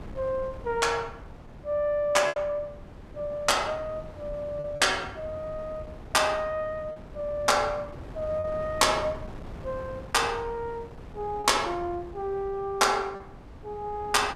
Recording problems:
wind noise; below 400 Hz, SNR 16 dB
lost packets; 3% of the sound replaced, filled with repeated pitch periods

